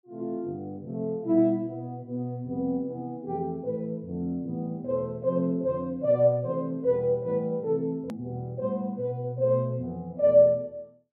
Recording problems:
hard cut with a click; at 8 s

